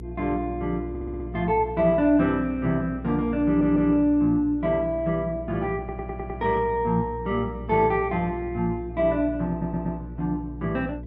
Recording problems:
mains hum; 60 Hz, harmonics up to 480 Hz, SNR 13 dB
stutter; 4 times, first at 1 s

